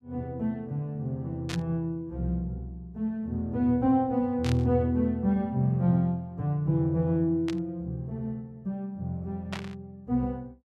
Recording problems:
burst of static; 4 times, first at 1.5 s; peak -4 dB vs average level

